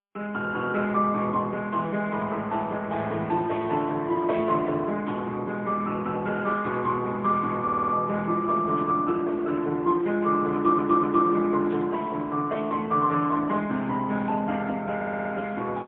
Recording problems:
telephone audio; 130 Hz to 3.4 kHz, AMR-NB, then MP3
burst of static; 4 times, first at 3.5 s; peak -15 dB vs average level
audio stuttering; at 7.5 s, at 11 s and at 15 s

